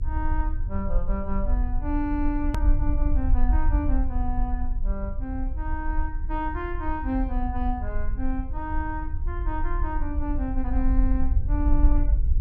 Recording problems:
electrical hum; 50 Hz, harmonics up to 450 Hz, SNR 20 dB
low-frequency rumble; below 52 Hz, strongest tone 22 Hz, SNR -4 dB
edit click; at 2.5 s

